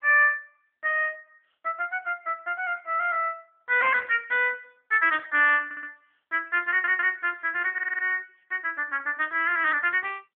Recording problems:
phone line; 320 Hz to 3.1 kHz, AMR-NB
audio stuttering; at 5.5 s, at 6.5 s and at 7.5 s

